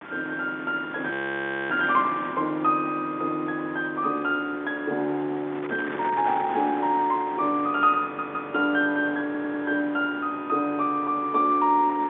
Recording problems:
phone line; 220 Hz to 3.8 kHz, G.711
wind on the microphone; below 1.8 kHz, SNR 13 dB
frozen audio; at 1 s for 0.5 s
audio stuttering; at 8 s and at 9.5 s

